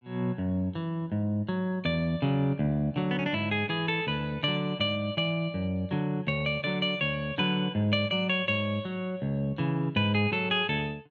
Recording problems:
none

